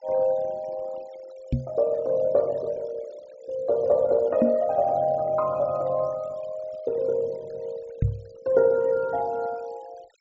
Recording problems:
low-pass filter; nothing above 8 kHz
noise reduction artefacts; signal-to-artefact ratio 26 dB
microphone thump; at 1.5 s, at 4.5 s and at 8 s; peak +5 dB vs average level

